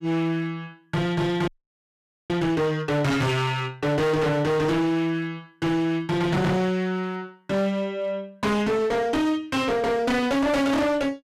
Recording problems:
distorted audio; hard clipping, uneven, signal-to-distortion ratio 5 dB
frozen audio; at 1.5 s for 1 s

